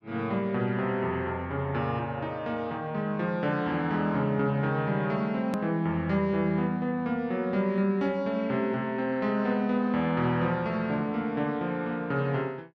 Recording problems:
hard cut with a click; at 5.5 s

